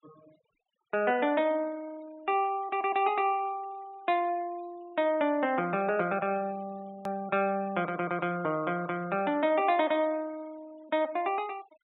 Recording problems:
treble cut off; nothing above 3.9 kHz
denoising artefacts; signal-to-artefact ratio 25 dB
hard cut with a click; at 7 s

